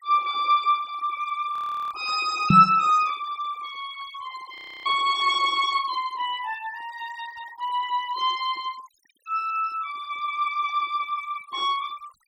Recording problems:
noise reduction artefacts; signal-to-artefact ratio 21 dB
frozen audio; at 1.5 s and at 4.5 s
knock on the microphone; at 2.5 s; peak +8 dB vs average level

